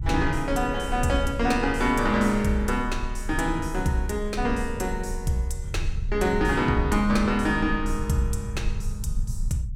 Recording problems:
rumble; below 72 Hz, strongest tone 30 Hz, SNR 8 dB

